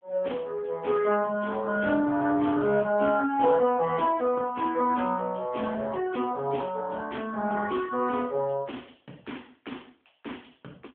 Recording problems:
telephone audio; 220 Hz to 3.4 kHz, AMR-NB

